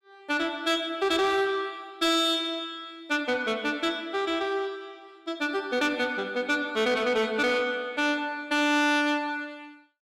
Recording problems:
distortion; soft clipping, signal-to-distortion ratio 11 dB

